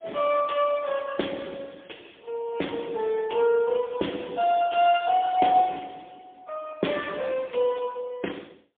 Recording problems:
telephone audio; 240 Hz to 3.4 kHz, AMR-NB, then MP3

